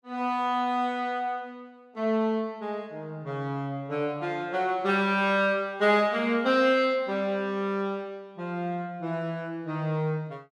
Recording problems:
none

